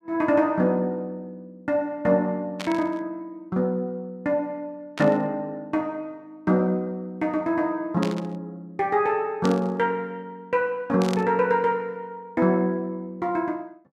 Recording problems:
static burst; 5 times, first at 2.5 s; peak -4 dB vs average level

